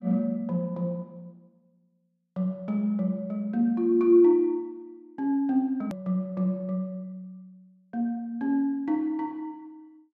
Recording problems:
hard cut with a click; at 6 s

